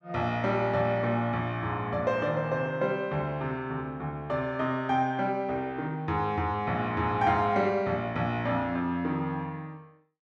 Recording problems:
none

